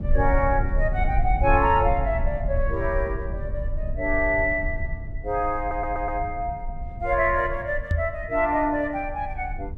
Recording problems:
low-frequency rumble; below 70 Hz, SNR 6 dB
stutter; at 5.5 s
knock on the microphone; at 8 s; peak +4 dB vs average level

